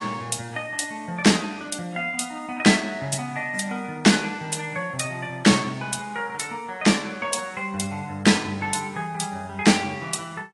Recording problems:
lossy compression; AAC, log-spectral distance 5 dB, nothing above 10.7 kHz

